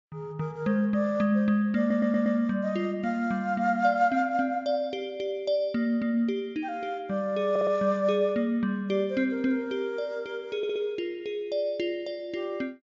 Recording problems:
treble cut off; nothing above 7.4 kHz
audio stuttering; at 2 s, at 7.5 s and at 11 s

